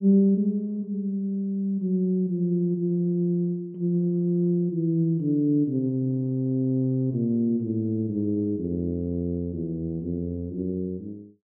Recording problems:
low-pass filter; nothing above 3.1 kHz

